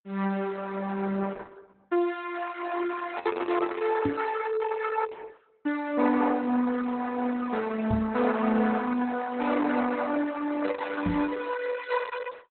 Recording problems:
codec artefacts; Opus, log-spectral distance 5 dB, nothing above 4 kHz
microphone bump; at 4 s, at 8 s and at 11 s; peak +5 dB vs average level

